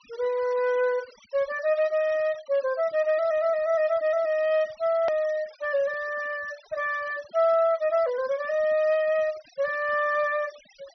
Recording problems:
low-pass filter; nothing above 5.9 kHz
denoising artefacts; signal-to-artefact ratio 23 dB
hard cut with a click; at 5 s

